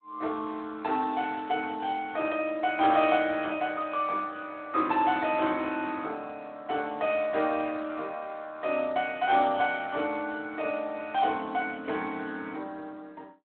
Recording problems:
phone line; 260 Hz to 3.7 kHz, Speex

